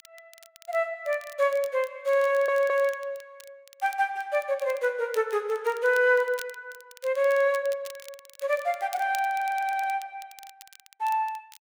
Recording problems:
crackling; vinyl, SNR 22 dB
audio stuttering; at 2.5 s and at 9.5 s

